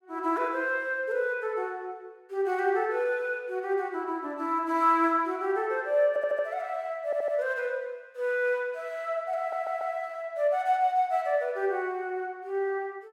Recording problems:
audio stuttering; at 6 s, at 7 s and at 9.5 s

